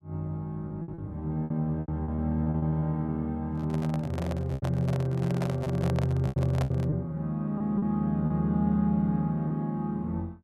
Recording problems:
packet loss; 9% of the sound replaced, filled with repeated pitch periods
handling noise; from 3.5 to 7 s; peak -2 dB vs average level

